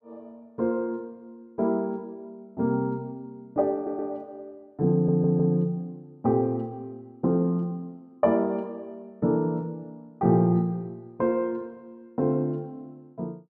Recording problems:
stutter; at 4 s and at 5 s

